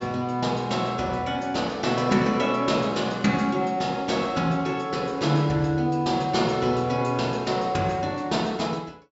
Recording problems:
treble missing; nothing above 7.6 kHz

